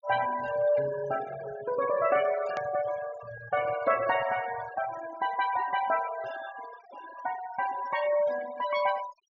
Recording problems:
low-pass filter; nothing above 7 kHz
noise reduction artefacts; signal-to-artefact ratio 13 dB
edit click; at 2.5 s

